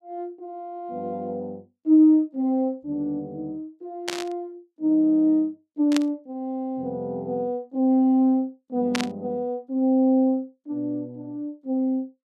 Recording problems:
burst of static; at 4 s, at 6 s and at 9 s; peak +1 dB vs average level

